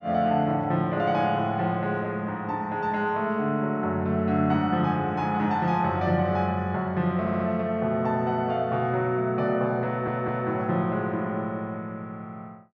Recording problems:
audio stuttering; at 7 s and at 10 s

